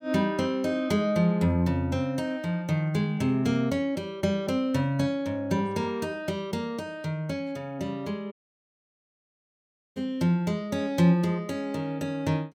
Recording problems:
dropout; at 8.5 s for 1.5 s

